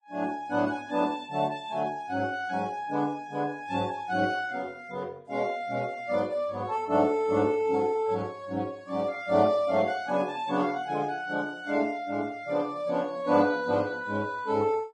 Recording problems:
lossy codec; Vorbis, log-spectral distance 2 dB

